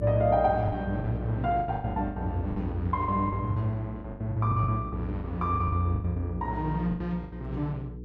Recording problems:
hum; 60 Hz, harmonics up to 480 Hz, SNR 8 dB
packet loss; 15% of the sound replaced, filled with the last packet

